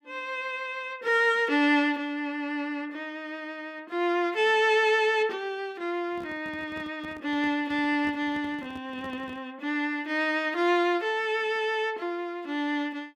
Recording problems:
microphone handling noise; from 6 to 9.5 s; peak -11 dB vs average level

